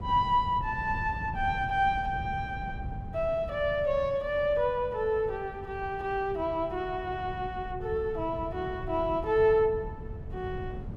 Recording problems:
wind noise; below 160 Hz, SNR 12 dB

